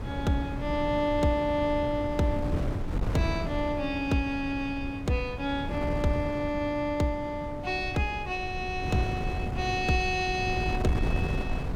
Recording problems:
wind on the microphone; below 230 Hz, SNR 5 dB

